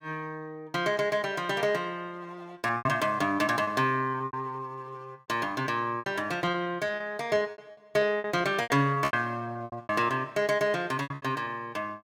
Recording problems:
packet loss; 11% of the sound replaced, filled with repeated pitch periods

